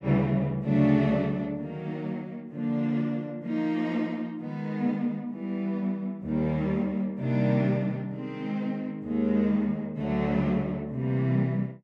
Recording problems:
none

